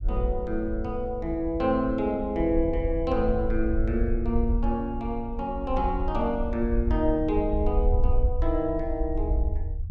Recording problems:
rumble; below 64 Hz, SNR 3 dB

